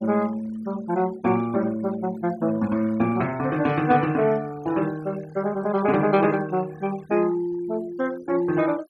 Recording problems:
noise reduction artefacts; signal-to-artefact ratio 19 dB

